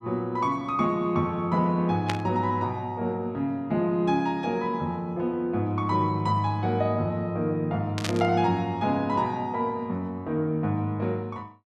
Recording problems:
burst of static; at 2 s and at 8 s; peak +1 dB vs average level

